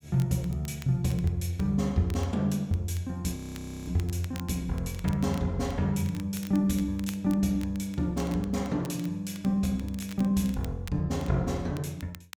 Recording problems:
crackle; vinyl, SNR 21 dB
audio freezing; at 3.5 s for 0.5 s

